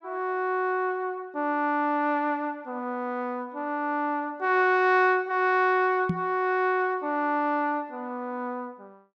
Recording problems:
microphone bump; at 6 s; peak +3 dB vs average level

